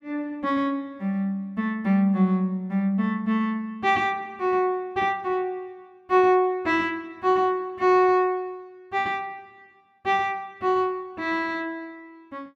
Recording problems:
none

